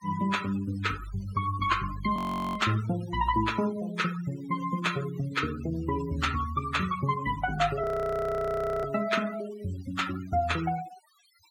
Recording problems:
noise reduction artefacts; signal-to-artefact ratio 14 dB
audio freezing; at 2 s and at 8 s for 1 s

